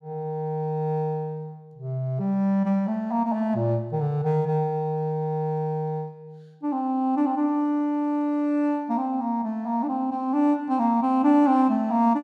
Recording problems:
none

